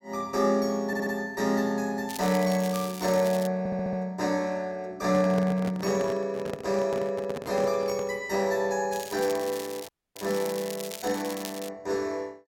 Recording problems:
stutter; at 1 s and at 3.5 s
crackling; from 2 to 3.5 s and from 9 to 12 s; loose cable, SNR 12 dB
handling noise; from 5 to 8 s; peak -3 dB vs average level
audio cutting out; at 10 s

